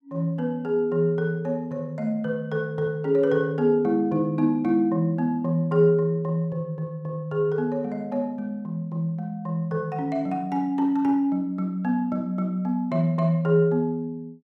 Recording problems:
none

